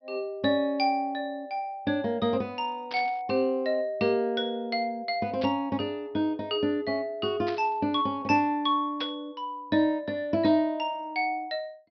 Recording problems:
treble cut off; nothing above 5.5 kHz
burst of static; 4 times, first at 3 s; peak -6 dB vs average level

